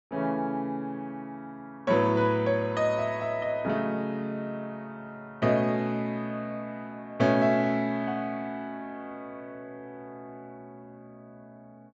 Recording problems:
treble cut off; nothing above 8 kHz

